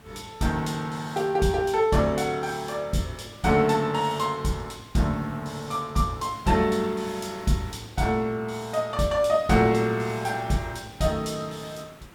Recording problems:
background hiss; slope -4 dB per octave, SNR 22 dB

